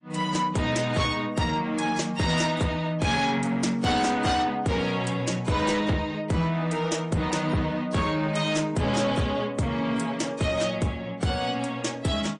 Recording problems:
codec artefacts; MP3, then AAC, log-spectral distance 3 dB
distortion; soft clipping, signal-to-distortion ratio 12 dB

